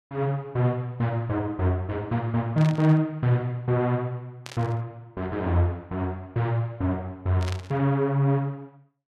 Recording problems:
burst of static; at 2.5 s, at 4.5 s and at 7.5 s; peak -7 dB vs average level

